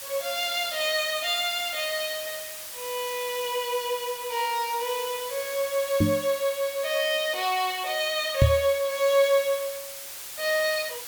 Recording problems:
background hiss; slope +2 dB per octave, SNR 10 dB
knock on the microphone; at 6 s and at 8.5 s; peak +9 dB vs average level

